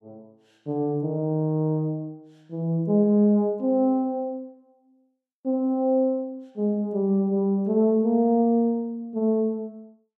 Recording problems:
none

